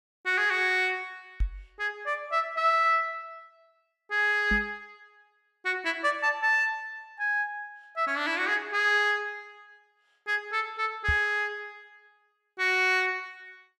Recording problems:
knock on the microphone; at 1.5 s, at 4.5 s and at 11 s; peak 0 dB vs average level

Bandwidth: 14.5 kHz